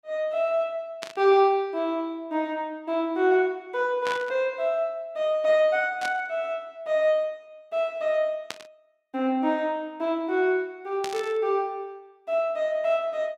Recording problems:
burst of static; 5 times, first at 1 s; peak -3 dB vs average level

